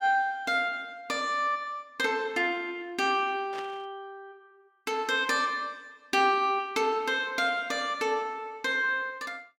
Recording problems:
static burst; at 3.5 s; peak -10 dB vs average level

